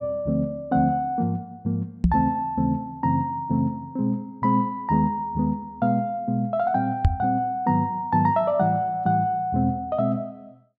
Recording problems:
knock on the microphone; at 2 s and at 7 s; peak +8 dB vs average level

